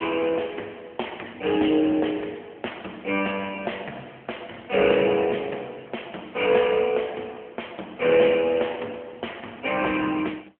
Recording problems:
telephone audio; 240 Hz to 3.3 kHz, AMR-NB

